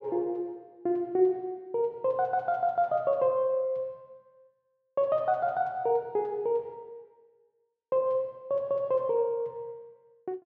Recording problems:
none

